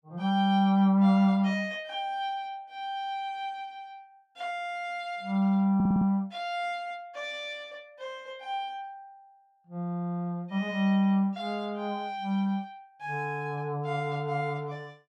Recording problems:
stutter; at 6 s

